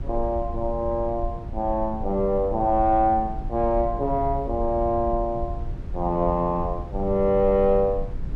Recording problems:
low-frequency rumble; below 76 Hz, SNR 10 dB

